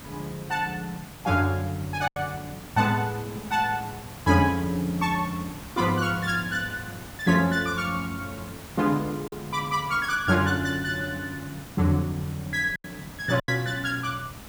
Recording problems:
hiss; slope -3 dB per octave, SNR 15 dB
lost packets; 2% of the sound replaced, filled with silence

